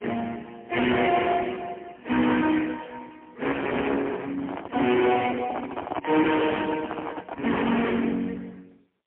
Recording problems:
phone line; 190 Hz to 2.8 kHz, AMR-NB, then MP3
distortion; hard clipping, uneven, signal-to-distortion ratio 7 dB
handling noise; from 4 to 8 s; peak -1 dB vs average level

